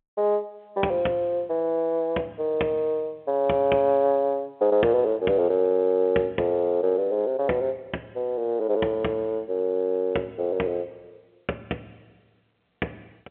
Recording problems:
phone line; 240 Hz to 3.3 kHz, G.711

